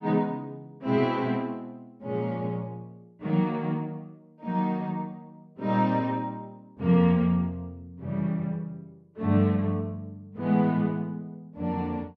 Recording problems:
none

